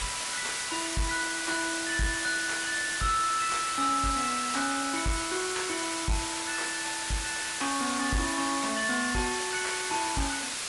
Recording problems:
lossy codec; MP3, log-spectral distance 15 dB, nothing above 11 kHz
distortion; soft clipping, signal-to-distortion ratio 10 dB
background hiss; SNR 3 dB

